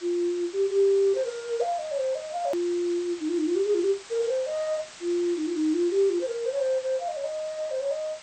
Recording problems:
codec artefacts; MP2, log-spectral distance 5 dB, nothing above 19.5 kHz
hiss; slope 0 dB per octave, SNR 17 dB
click at an edit; at 2.5 s

